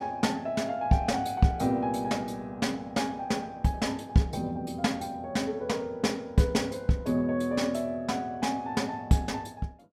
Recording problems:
none

